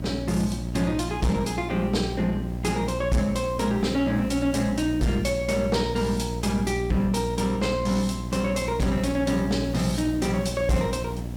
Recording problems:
distorted audio; soft clipping, signal-to-distortion ratio 11 dB
hum; 60 Hz, harmonics up to 660 Hz, SNR 7 dB
hiss; SNR 19 dB

